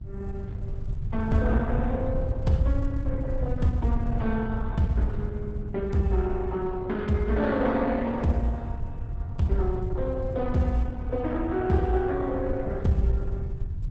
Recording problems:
codec artefacts; Opus, log-spectral distance 2 dB, nothing above 8 kHz
electrical hum; 50 Hz, harmonics up to 1.1 kHz, SNR 24 dB
low-frequency rumble; below 100 Hz, SNR 6 dB

